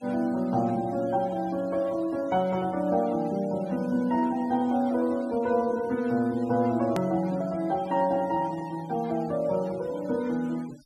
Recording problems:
noise reduction artefacts; signal-to-artefact ratio 22 dB
click at an edit; at 7 s

